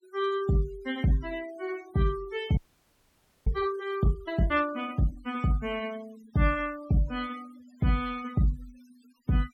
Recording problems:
denoising artefacts; signal-to-artefact ratio 20 dB
audio freezing; at 2.5 s for 1 s

